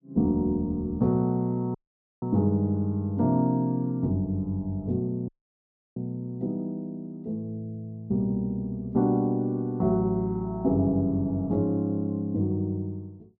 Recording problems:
audio cutting out; at 2 s and at 5.5 s for 0.5 s

